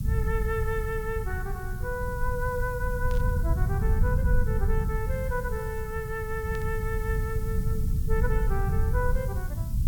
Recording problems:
background hiss; SNR 15 dB
low-frequency rumble; below 100 Hz, SNR -4 dB
static burst; at 3 s and at 6.5 s; peak -9 dB vs average level

